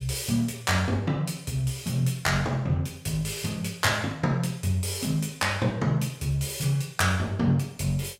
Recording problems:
none

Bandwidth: 16 kHz